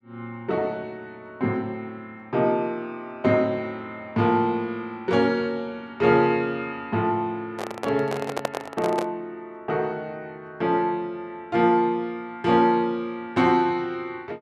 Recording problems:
microphone handling noise; from 7.5 to 9 s; peak +3 dB vs average level

